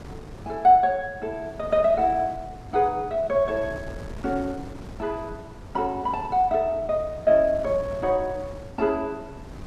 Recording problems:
wind on the microphone; below 370 Hz, SNR 17 dB

